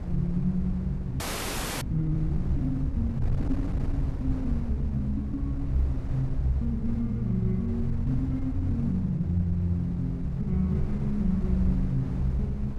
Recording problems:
wind noise; below 94 Hz, SNR 6 dB
frozen audio; at 1 s for 0.5 s

